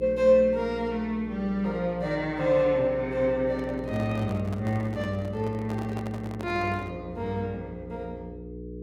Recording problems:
hum; 60 Hz, harmonics up to 480 Hz, SNR 13 dB
handling noise; from 3.5 to 7 s; peak -8 dB vs average level

